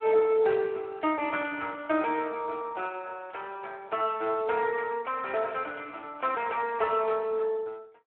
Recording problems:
phone line; 280 Hz to 3.2 kHz, Speex

